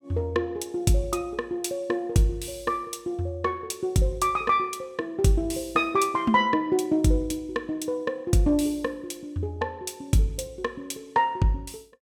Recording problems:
none

